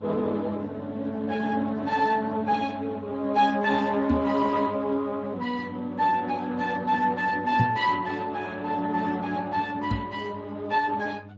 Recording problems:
lossy codec; Speex, log-spectral distance 3 dB
hum; 50 Hz, harmonics up to 600 Hz, SNR 18 dB
microphone thump; at 4 s, at 7.5 s and at 10 s; peak +5 dB vs average level

